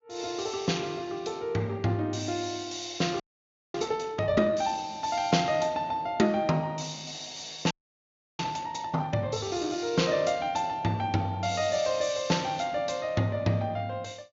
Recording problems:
low-pass filter; nothing above 7.1 kHz
audio freezing; at 3 s for 0.5 s and at 7.5 s for 0.5 s

